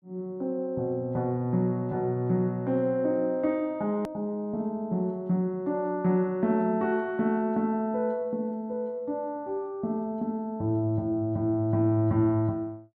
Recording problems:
hard cut with a click; at 4 s

